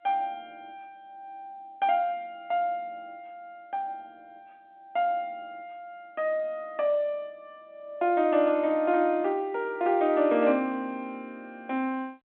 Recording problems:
telephone audio; 190 Hz to 3.6 kHz, G.711

